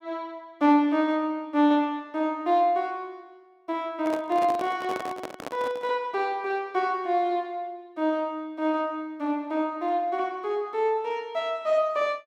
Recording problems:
microphone handling noise; from 4 to 6 s; peak -4 dB vs average level

